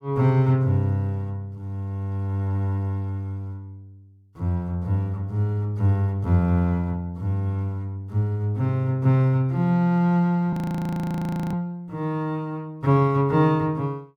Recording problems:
frozen audio; at 11 s for 1 s

